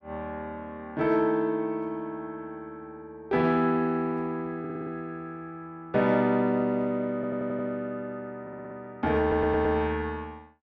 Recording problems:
audio stuttering; 4 times, first at 4.5 s

